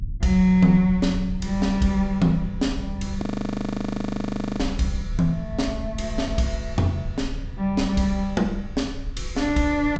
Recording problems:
treble missing; nothing above 8 kHz
rumble; below 88 Hz, strongest tone 32 Hz, SNR 11 dB
audio freezing; at 3 s for 1.5 s

